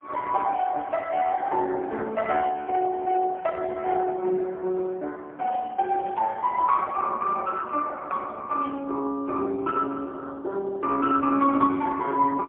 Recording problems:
phone line; 240 Hz to 2.2 kHz, AMR-NB, then MP3

